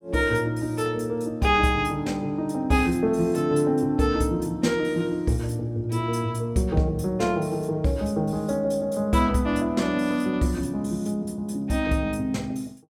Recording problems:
none

